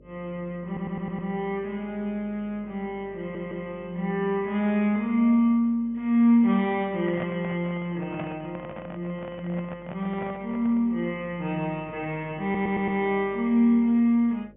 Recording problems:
low-pass filter; nothing above 3.2 kHz
mains hum; 50 Hz, harmonics up to 600 Hz, SNR 27 dB
stutter; at 0.5 s, at 3 s and at 12 s
handling noise; from 7 to 11 s; peak -5 dB vs average level

